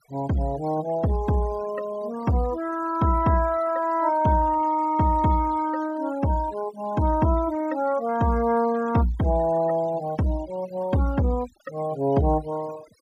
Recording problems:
denoising artefacts; signal-to-artefact ratio 21 dB

